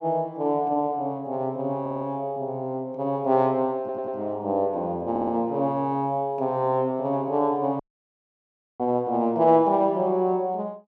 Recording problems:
audio stuttering; at 2 s, at 4 s and at 5 s
dropout; at 8 s for 1 s

